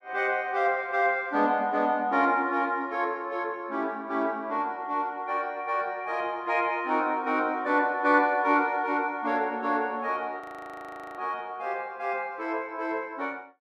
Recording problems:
audio freezing; at 10 s for 1 s

